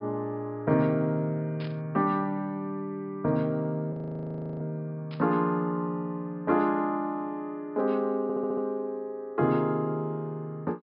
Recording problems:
treble missing; nothing above 5.5 kHz
static burst; at 1.5 s and at 5 s; peak -12 dB vs average level
audio freezing; at 4 s for 0.5 s
stutter; at 8 s

